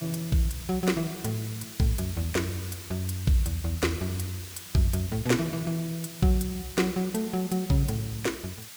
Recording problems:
background hiss; slope +2 dB per octave, SNR 12 dB

